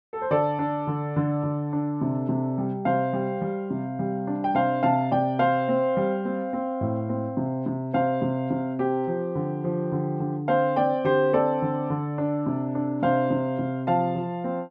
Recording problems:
none

